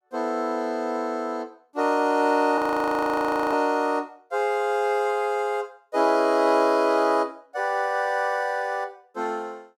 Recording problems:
frozen audio; at 2.5 s for 1 s

